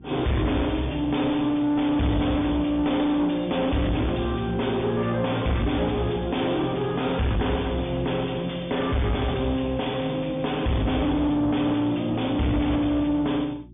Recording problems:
treble missing; nothing above 3.6 kHz
lossy codec; MP3, log-spectral distance 3 dB
distorted audio; soft clipping, signal-to-distortion ratio 7 dB
hum; 60 Hz, harmonics up to 360 Hz, SNR 22 dB

